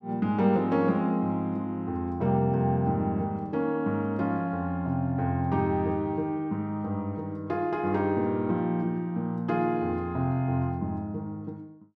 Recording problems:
none

